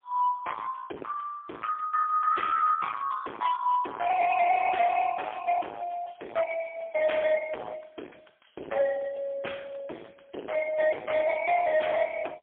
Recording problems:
telephone audio; 260 Hz to 3.5 kHz, AMR-NB, then MP3
distorted audio; hard clipping, signal-to-distortion ratio 7 dB

